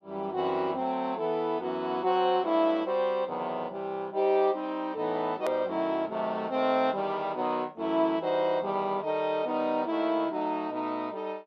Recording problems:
click at an edit; at 5.5 s

